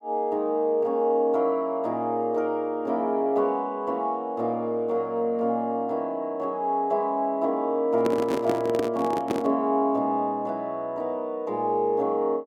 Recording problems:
microphone handling noise; from 8 to 9.5 s; peak +2 dB vs average level

